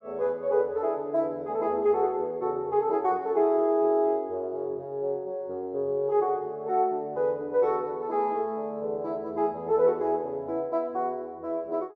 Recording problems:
none

